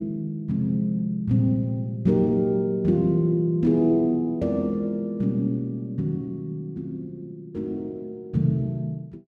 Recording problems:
none

